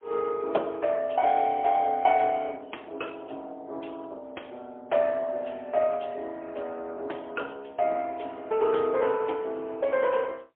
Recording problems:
telephone audio; 300 Hz to 3.4 kHz, AMR-NB, then MP3

